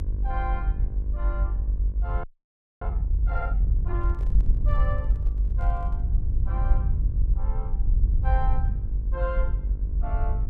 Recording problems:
electrical hum; 50 Hz, harmonics up to 1.1 kHz, SNR 10 dB
rumble; below 54 Hz, SNR -11 dB
audio freezing; at 2 s for 0.5 s
microphone handling noise; from 4 to 6 s; peak -8 dB vs average level

